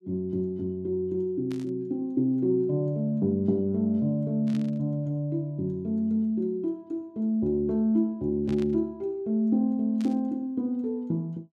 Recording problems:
burst of static; 4 times, first at 1.5 s; peak -14 dB vs average level

